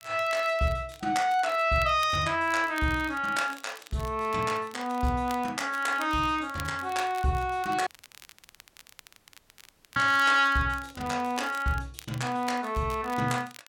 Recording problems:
crackle; vinyl, SNR 21 dB
dropout; at 8 s for 2 s

